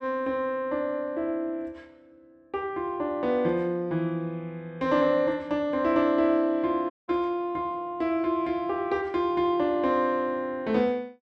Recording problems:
dropout; at 7 s

